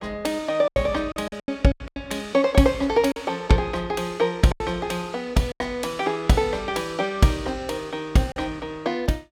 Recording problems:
packet loss; 7% of the sound replaced, filled with silence

